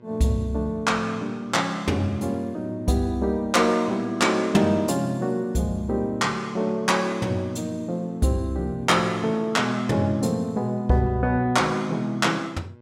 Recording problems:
mains hum; 60 Hz, harmonics up to 2 kHz, SNR 25 dB

